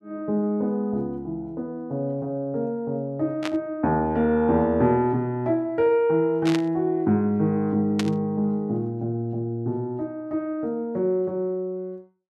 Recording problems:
static burst; at 3.5 s, at 6.5 s and at 8 s; peak -1 dB vs average level

